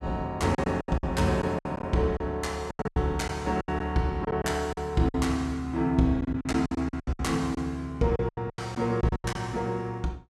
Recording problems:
lost packets; 14% of the sound replaced, filled with silence

